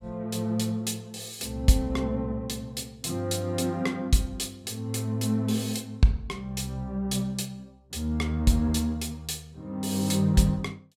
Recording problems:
none

